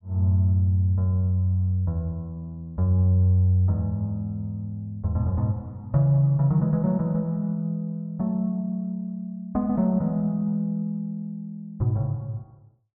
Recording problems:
low-pass filter; nothing above 4 kHz

